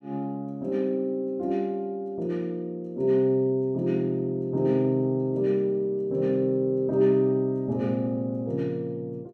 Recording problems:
none

